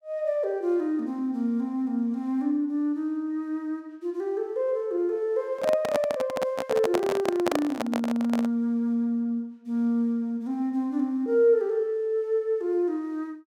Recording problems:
microphone handling noise; from 5.5 to 8.5 s; peak +4 dB vs average level

